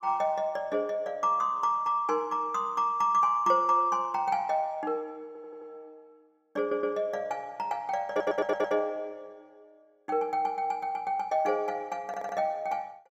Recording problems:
audio stuttering; 4 times, first at 5.5 s

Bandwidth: 15.5 kHz